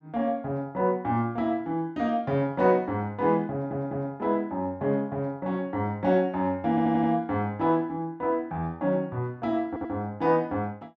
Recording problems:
audio stuttering; at 3.5 s, at 6.5 s and at 9.5 s

